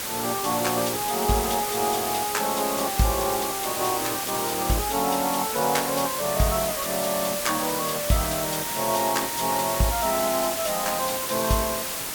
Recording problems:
background hiss; slope -1 dB per octave, SNR 1 dB

